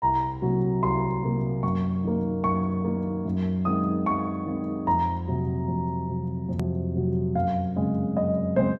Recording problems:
click at an edit; at 6.5 s

